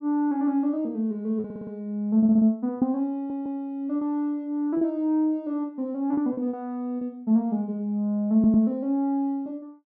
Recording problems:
lost packets; 4% of the sound replaced, filled with repeated pitch periods
audio stuttering; 4 times, first at 1.5 s

